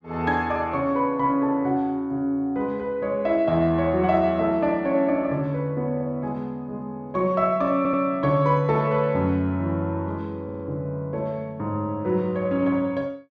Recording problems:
audio stuttering; at 8 s and at 10 s

